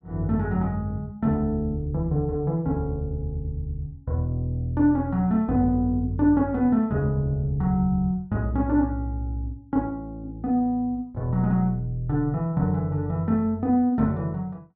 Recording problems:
none

